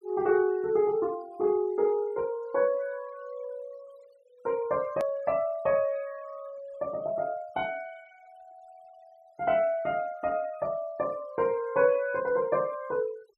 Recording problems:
noise reduction artefacts; signal-to-artefact ratio 25 dB
edit click; at 5 s

